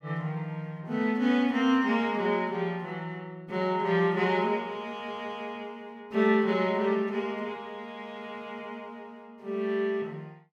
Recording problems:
none

